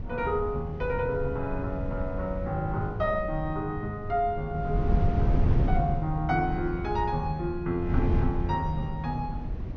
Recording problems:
treble cut off; nothing above 6.7 kHz
wind on the microphone; below 130 Hz, SNR 2 dB

